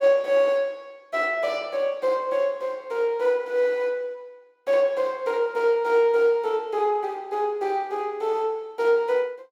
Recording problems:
none

